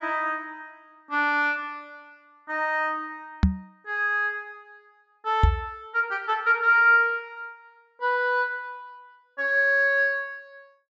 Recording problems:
treble missing; nothing above 7.6 kHz
microphone thump; at 3.5 s and at 5.5 s; peak +7 dB vs average level

